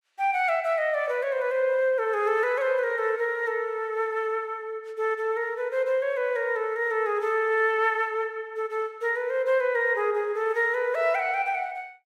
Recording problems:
none

